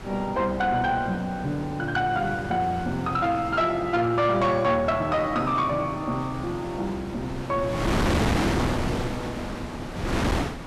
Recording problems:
distorted audio; soft clipping, signal-to-distortion ratio 12 dB
wind on the microphone; below 1.1 kHz, SNR 5 dB

